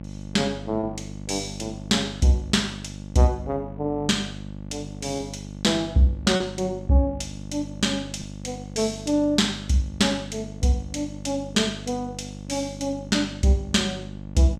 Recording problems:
electrical hum; 50 Hz, harmonics up to 900 Hz, SNR 13 dB
packet loss; 0.8% of the sound replaced, filled with repeated pitch periods

